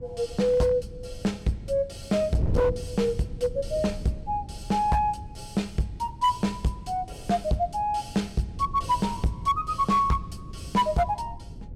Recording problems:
distortion; hard clipping, signal-to-distortion ratio 12 dB
wind noise; below 150 Hz, SNR 12 dB

